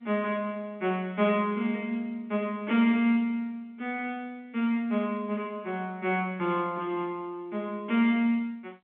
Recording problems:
telephone audio; 190 Hz to 3.7 kHz, G.711

